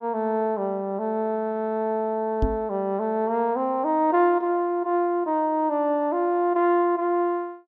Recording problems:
microphone thump; at 2.5 s; peak +3 dB vs average level

